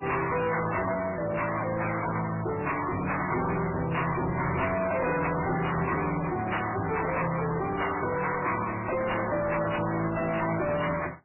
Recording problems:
lossy codec; MP3, then AAC, log-spectral distance 9 dB, nothing above 2.7 kHz
distorted audio; hard clipping, uneven, signal-to-distortion ratio 5 dB

